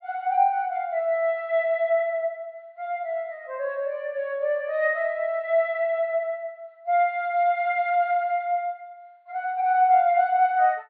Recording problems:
treble missing; nothing above 4.6 kHz

